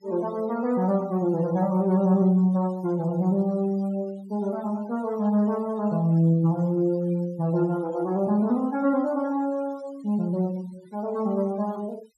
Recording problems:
noise reduction artefacts; signal-to-artefact ratio 26 dB

